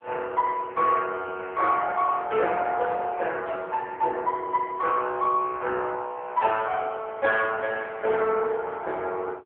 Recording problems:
phone line; 340 Hz to 3.4 kHz, AMR-NB

